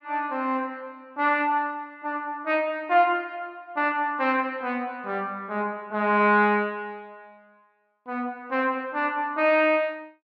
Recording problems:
none

